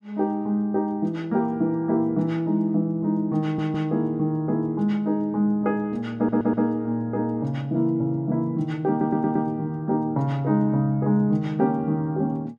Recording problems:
audio stuttering; at 3.5 s, at 6 s and at 9 s

